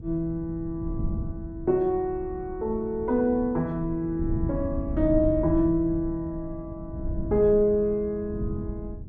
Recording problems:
wind noise; below 140 Hz, SNR 9 dB

